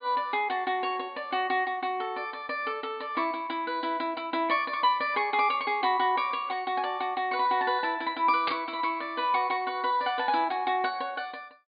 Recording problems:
treble cut off; nothing above 4.8 kHz
static burst; at 8.5 s; peak +1 dB vs average level

